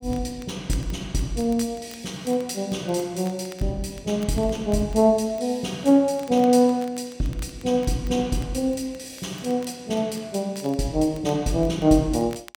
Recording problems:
crackling; vinyl, SNR 26 dB

